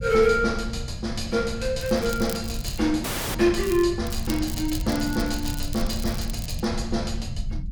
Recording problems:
low-frequency rumble; below 110 Hz, SNR 8 dB
crackle; at 2 s, at 3.5 s and from 4 to 6.5 s; loose cable, SNR 13 dB
audio cutting out; at 3 s

